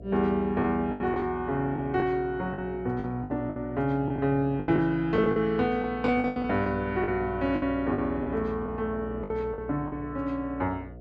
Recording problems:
hum; 60 Hz, harmonics up to 720 Hz, SNR 15 dB
lost packets; 10% of the sound replaced, filled with the last packet

